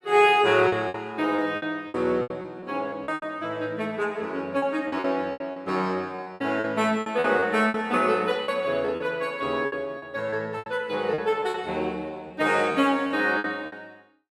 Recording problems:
packet loss; 12% of the sound replaced, filled with repeated pitch periods

